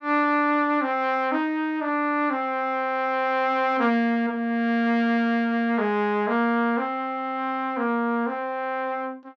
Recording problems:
none

